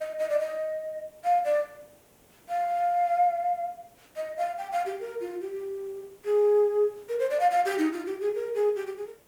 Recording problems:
hiss; slope -5 dB per octave, SNR 30 dB

